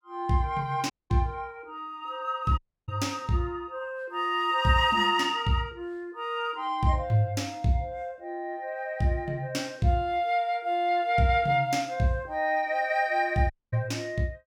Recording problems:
audio cutting out; at 1 s, at 2.5 s and at 14 s

